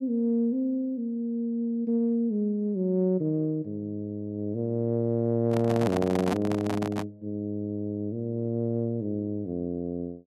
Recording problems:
handling noise; from 5.5 to 7 s; peak +1 dB vs average level

